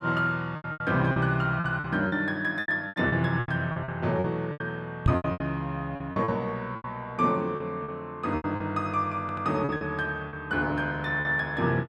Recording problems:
lost packets; 13% of the sound replaced, filled with repeated pitch periods
microphone bump; at 5 s; peak +8 dB vs average level
audio stuttering; at 9 s

